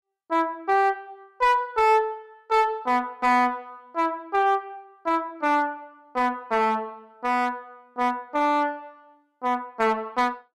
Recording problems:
distorted audio; hard clipping, uneven, signal-to-distortion ratio 10 dB

